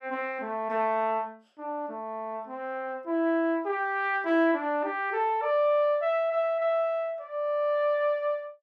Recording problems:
none

